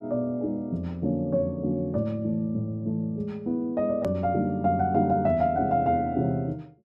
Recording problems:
hard cut with a click; at 4 s

